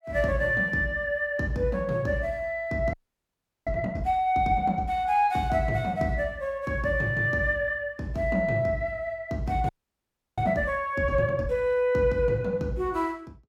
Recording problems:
audio freezing; at 3 s for 0.5 s and at 9.5 s for 0.5 s

